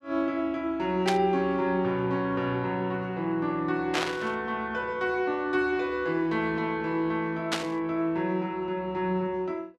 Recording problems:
burst of static; at 1 s, at 4 s and at 7.5 s; peak +4 dB vs average level

